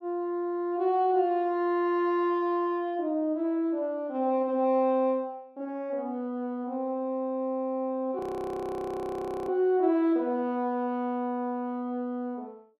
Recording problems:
frozen audio; at 8 s for 1.5 s

